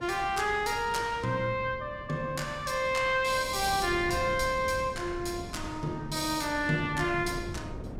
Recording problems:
wind noise; below 250 Hz, SNR 13 dB

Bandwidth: 16 kHz